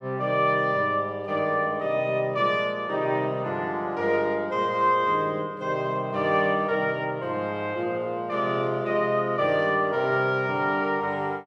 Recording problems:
none

